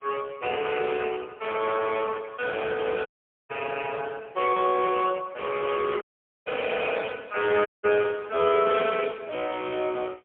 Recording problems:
telephone audio; 320 Hz to 2.5 kHz, AMR-NB, then MP3
dropout; at 3 s, at 6 s and at 7.5 s

